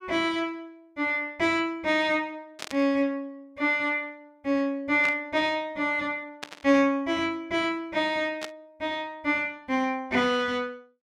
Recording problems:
burst of static; 4 times, first at 2.5 s; peak -3 dB vs average level

